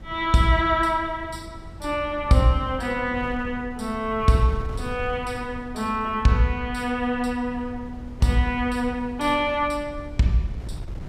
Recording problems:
wind noise; below 120 Hz, SNR 15 dB

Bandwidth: 14.5 kHz